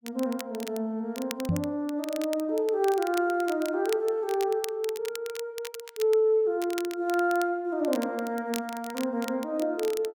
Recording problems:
crackling; vinyl, SNR 14 dB
knock on the microphone; at 1.5 s; peak +4 dB vs average level

